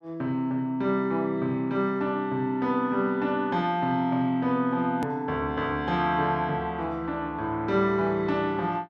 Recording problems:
edit click; at 5 s

